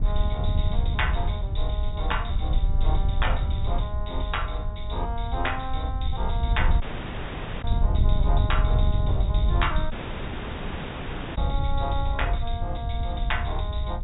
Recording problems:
treble cut off; nothing above 4 kHz
wind on the microphone; below 80 Hz, SNR -5 dB
dropout; at 7 s for 1 s and at 10 s for 1.5 s

